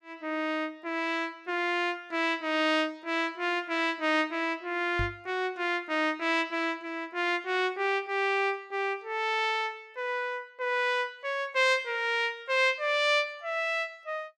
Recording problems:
microphone bump; at 5 s; peak -2 dB vs average level

